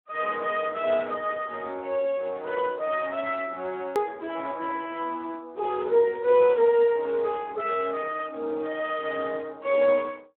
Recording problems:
phone line; 280 Hz to 3.3 kHz, Speex
edit click; at 4 s

